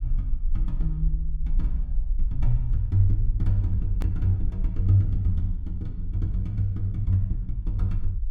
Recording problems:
rumble; below 48 Hz, strongest tone 22 Hz, SNR 4 dB
edit click; at 4 s

